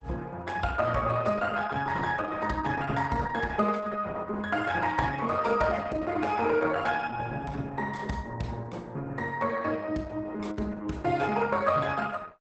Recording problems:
codec artefacts; Opus, log-spectral distance 4 dB, nothing above 8 kHz

